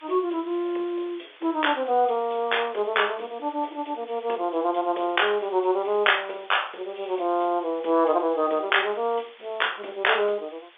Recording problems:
telephone audio; 340 Hz to 3.6 kHz, G.711
background hiss; SNR 24 dB

